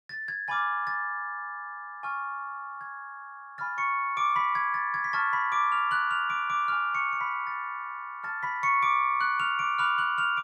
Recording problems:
none

